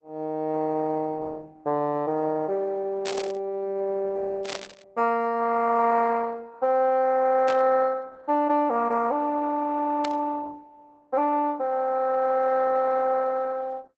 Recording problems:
lossy codec; Opus, log-spectral distance 3 dB
static burst; 4 times, first at 3 s; peak -5 dB vs average level

